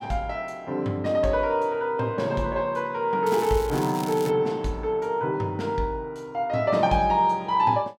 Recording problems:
crackling; from 3.5 to 4.5 s; loose cable, SNR 16 dB

